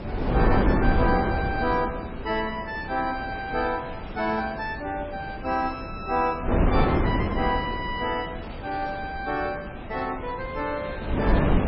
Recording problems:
codec artefacts; MP3, log-spectral distance 5 dB, nothing above 4.9 kHz
hiss; SNR 15 dB
wind on the microphone; below 410 Hz, SNR 0 dB

